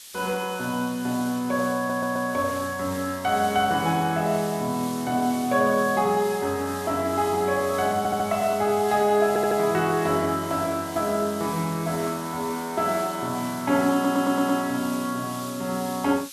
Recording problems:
hiss; SNR 15 dB
audio stuttering; 4 times, first at 2 s

